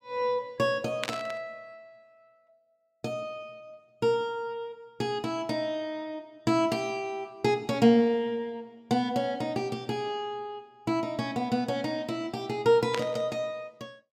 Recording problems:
burst of static; at 1 s and at 13 s; peak +2 dB vs average level

